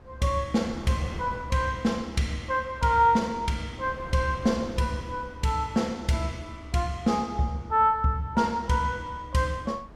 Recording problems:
wind noise; below 460 Hz, SNR 19 dB

